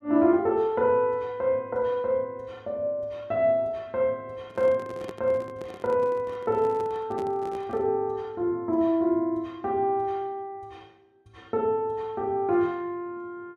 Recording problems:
microphone handling noise; from 4.5 to 8 s; peak -7 dB vs average level

